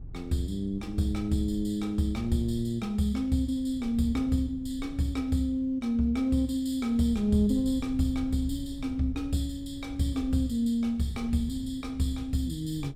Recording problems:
wind on the microphone; below 100 Hz, SNR 15 dB

